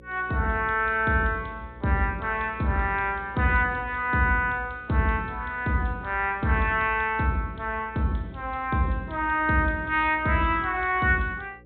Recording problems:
treble cut off; nothing above 4 kHz
hum; 60 Hz, harmonics up to 540 Hz, SNR 23 dB

